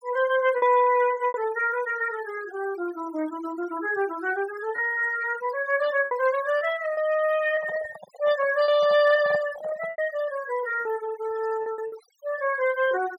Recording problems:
denoising artefacts; signal-to-artefact ratio 17 dB
packet loss; 5% of the sound replaced, filled with repeated pitch periods
microphone handling noise; from 7.5 to 10 s; peak -7 dB vs average level

